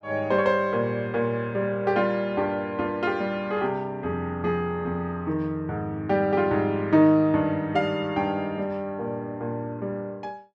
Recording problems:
none

